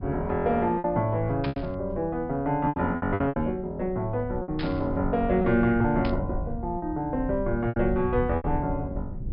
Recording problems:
treble missing; nothing above 5.5 kHz
rumble; below 100 Hz, SNR 11 dB
lost packets; 8% of the sound replaced, filled with repeated pitch periods
burst of static; at 1.5 s, at 4.5 s and at 6 s; peak -5 dB vs average level

